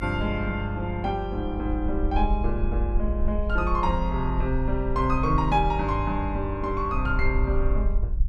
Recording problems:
low-frequency rumble; below 52 Hz, SNR 3 dB

